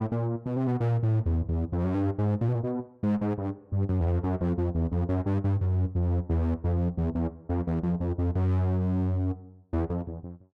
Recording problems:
distorted audio; hard clipping, uneven, signal-to-distortion ratio 10 dB

